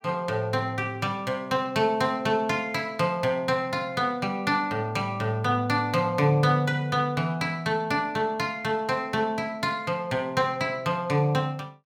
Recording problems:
none

